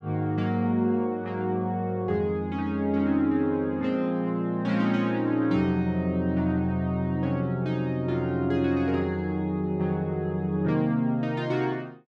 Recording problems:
none

